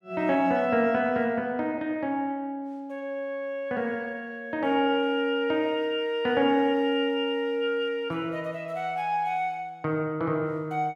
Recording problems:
none

